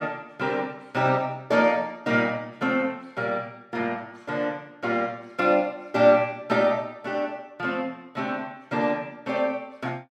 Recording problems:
none

